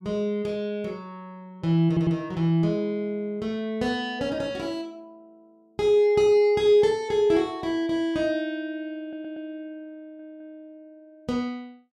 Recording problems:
audio stuttering; at 2 s, at 9 s and at 10 s

